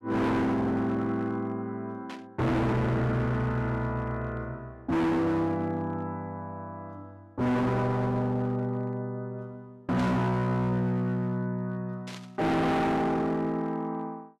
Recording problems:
distortion; hard clipping, signal-to-distortion ratio 6 dB
burst of static; at 2 s, at 10 s and at 12 s; peak -10 dB vs average level

